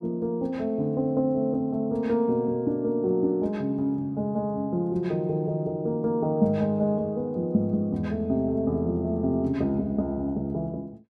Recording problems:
none

